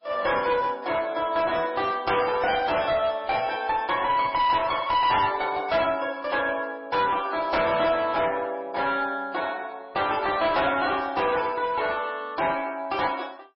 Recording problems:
codec artefacts; MP3, log-spectral distance 4 dB, nothing above 5.2 kHz
distorted audio; hard clipping, uneven, signal-to-distortion ratio 9 dB

